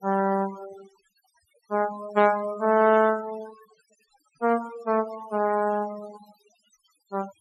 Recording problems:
noise reduction artefacts; signal-to-artefact ratio 18 dB

